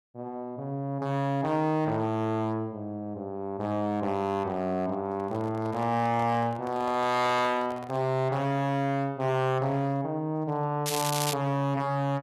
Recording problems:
distorted audio; hard clipping, signal-to-distortion ratio 12 dB
handling noise; from 5 to 8 s; peak -9 dB vs average level
crackling; at 11 s; loose cable, SNR 4 dB

